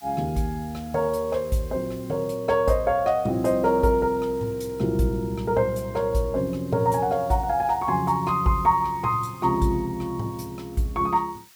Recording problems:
hiss; slope +2 dB per octave, SNR 25 dB

